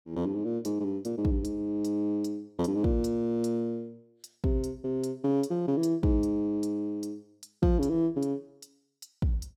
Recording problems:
none

